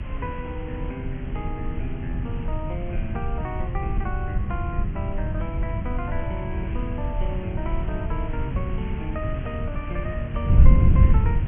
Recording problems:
treble cut off; nothing above 3.1 kHz
background hiss; SNR 11 dB
wind noise; below 100 Hz, SNR -7 dB

